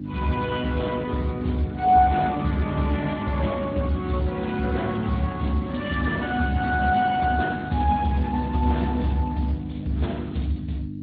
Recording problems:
lossy codec; AAC, then Speex, log-spectral distance 5 dB
mains hum; 50 Hz, harmonics up to 400 Hz, SNR 10 dB

